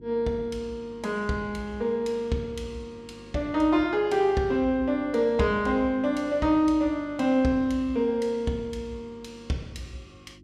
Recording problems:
hum; 50 Hz, harmonics up to 350 Hz, SNR 24 dB

